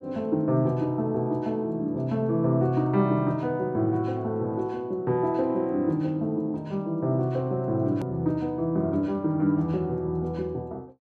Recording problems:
click at an edit; at 8 s

